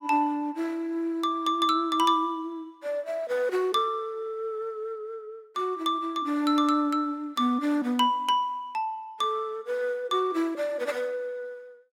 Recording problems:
none

